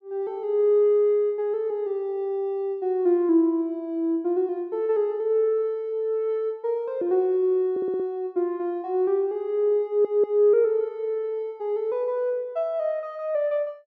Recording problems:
stutter; at 7.5 s and at 10 s

